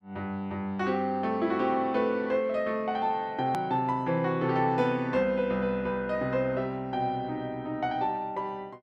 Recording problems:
click at an edit; at 3.5 s

